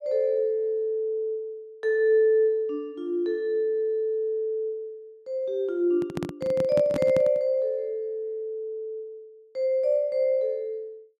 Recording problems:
handling noise; from 6 to 7.5 s; peak -1 dB vs average level

